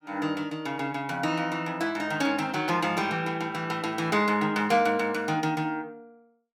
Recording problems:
none

